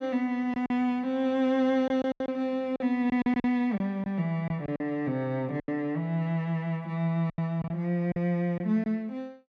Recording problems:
lost packets; 8% of the sound replaced, filled with silence

